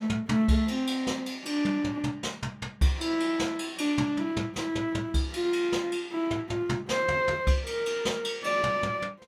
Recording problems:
none

